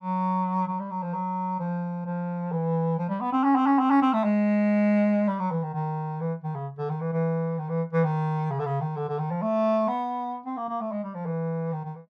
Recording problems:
none

